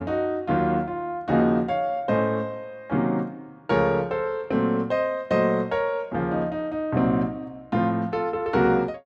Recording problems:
none

